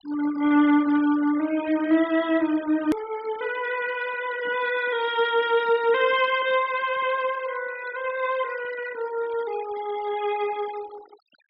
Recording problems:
treble missing; nothing above 5.1 kHz
noise reduction artefacts; signal-to-artefact ratio 16 dB
click at an edit; at 3 s

